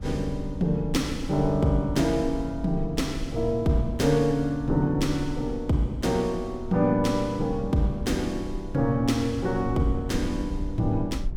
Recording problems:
rumble; below 72 Hz, SNR 12 dB

